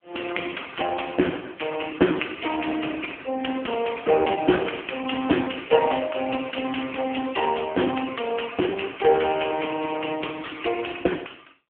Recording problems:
phone line; 190 Hz to 3.3 kHz, AMR-NB

